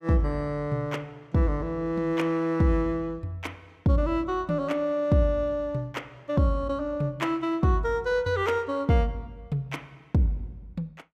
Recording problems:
none

